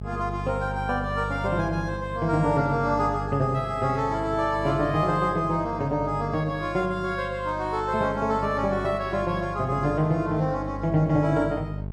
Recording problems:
hum; 50 Hz, harmonics up to 650 Hz, SNR 10 dB

